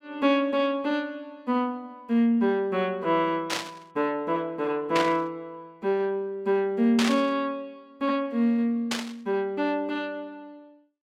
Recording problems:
burst of static; 4 times, first at 3.5 s; peak +2 dB vs average level

